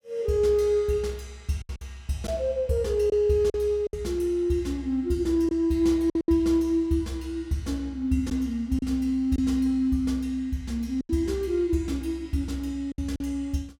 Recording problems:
lost packets; 5% of the sound replaced, filled with silence

